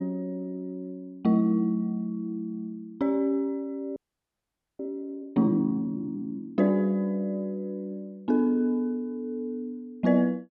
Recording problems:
audio freezing; at 4 s for 1 s

